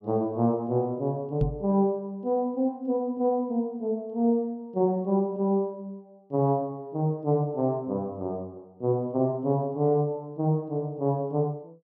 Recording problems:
microphone bump; at 1.5 s; peak +4 dB vs average level

